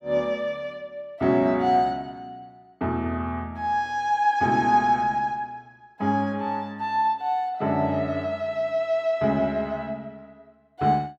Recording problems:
none

